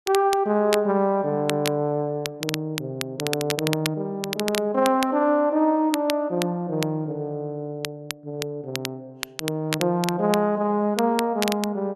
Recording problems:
crackle; vinyl, SNR 9 dB

